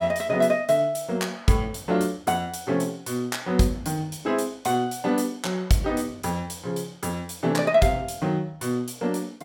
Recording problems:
none

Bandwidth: 17.5 kHz